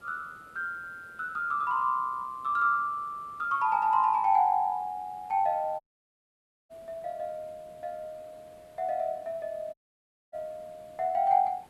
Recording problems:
hiss; slope -6 dB per octave, SNR 29 dB
dropout; at 6 s for 1 s and at 9.5 s for 0.5 s

